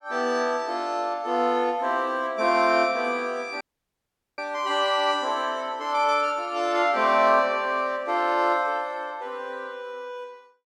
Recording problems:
audio cutting out; at 3.5 s for 1 s

